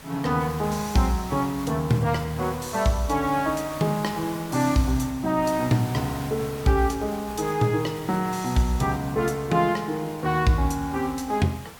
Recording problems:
background hiss; SNR 15 dB

